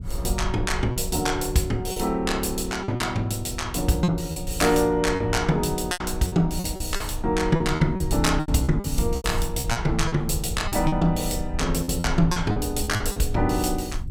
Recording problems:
rumble; below 80 Hz, SNR 8 dB
packet loss; 10% of the sound replaced, filled with repeated pitch periods

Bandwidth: 17 kHz